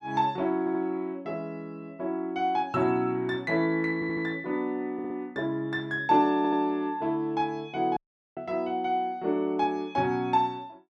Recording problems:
stutter; 4 times, first at 0.5 s
audio cutting out; at 8 s

